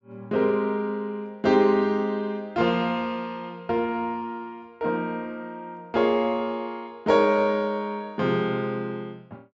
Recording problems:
treble cut off; nothing above 8 kHz

